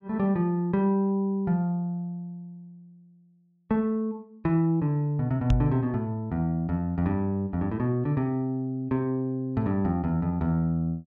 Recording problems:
knock on the microphone; at 5.5 s; peak +4 dB vs average level

